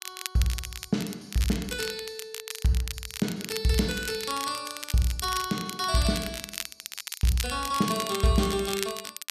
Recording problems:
crackle; vinyl, SNR 8 dB

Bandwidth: 14 kHz